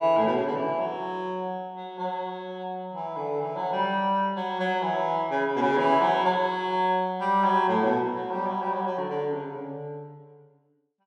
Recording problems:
none

